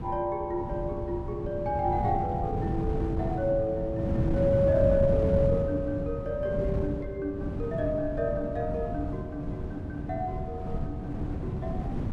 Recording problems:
wind on the microphone; below 220 Hz, SNR 3 dB

